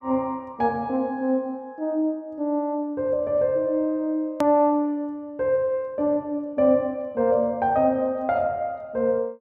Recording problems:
click at an edit; at 4.5 s

